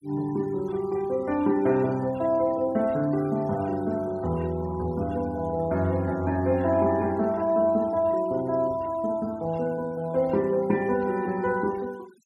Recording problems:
noise reduction artefacts; signal-to-artefact ratio 24 dB

